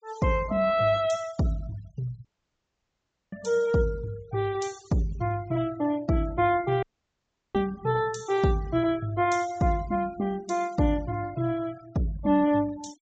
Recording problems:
treble missing; nothing above 8 kHz
denoising artefacts; signal-to-artefact ratio 22 dB
audio cutting out; at 2.5 s for 1 s and at 7 s for 0.5 s

